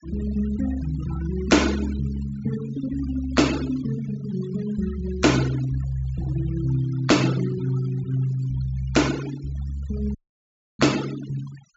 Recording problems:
treble missing; nothing above 8 kHz
noise reduction artefacts; signal-to-artefact ratio 15 dB
dropout; at 10 s for 0.5 s

